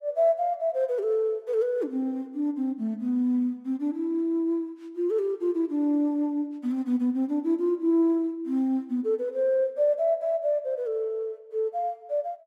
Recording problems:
none

